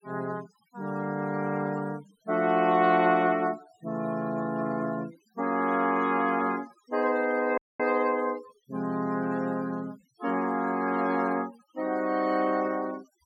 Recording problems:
noise reduction artefacts; signal-to-artefact ratio 23 dB
dropout; at 7.5 s

